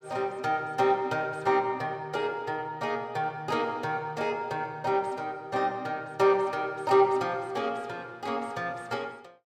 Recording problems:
none

